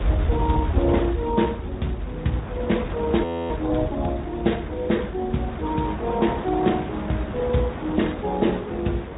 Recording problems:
treble missing; nothing above 3.8 kHz
lossy codec; Speex, log-spectral distance 2 dB
rumble; below 100 Hz, SNR 8 dB
wind on the microphone; below 1.1 kHz, SNR 10 dB
frozen audio; at 3 s

